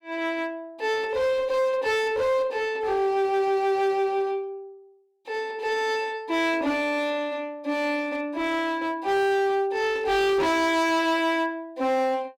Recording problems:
distorted audio; hard clipping, uneven, signal-to-distortion ratio 7 dB

